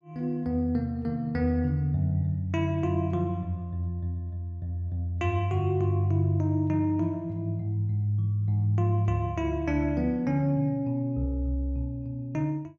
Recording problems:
none

